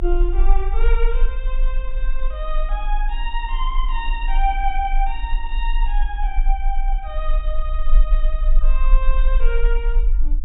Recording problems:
low-pass filter; nothing above 4 kHz
low-frequency rumble; below 34 Hz, strongest tone 26 Hz, SNR -6 dB

